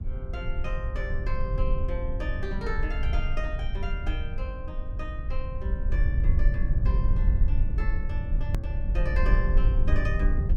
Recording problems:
low-frequency rumble; below 62 Hz, SNR -8 dB
hard cut with a click; at 8.5 s

